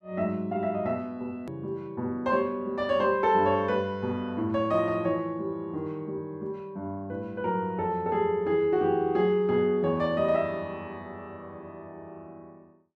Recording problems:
hard cut with a click; at 1.5 s

